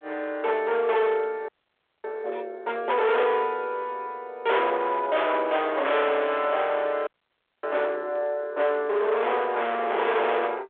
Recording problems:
telephone audio; 390 Hz to 3.8 kHz, G.726
distorted audio; hard clipping, signal-to-distortion ratio 7 dB
frozen audio; at 1.5 s for 0.5 s and at 7 s for 0.5 s

